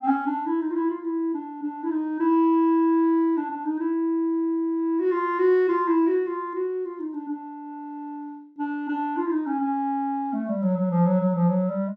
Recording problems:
none

